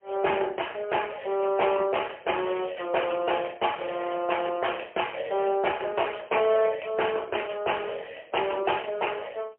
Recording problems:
phone line; 320 Hz to 3.1 kHz, AMR-NB, then MP3

